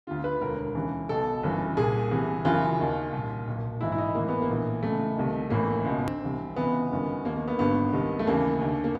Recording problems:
click at an edit; at 6 s

